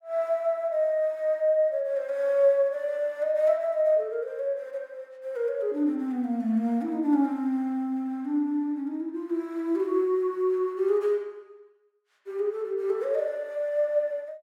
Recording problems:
none

